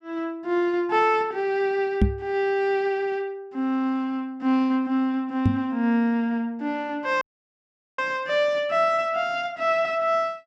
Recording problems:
knock on the microphone; at 2 s and at 5.5 s; peak +7 dB vs average level
dropout; at 7 s for 1 s

